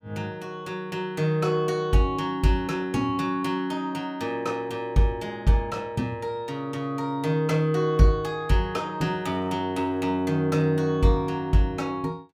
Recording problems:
none

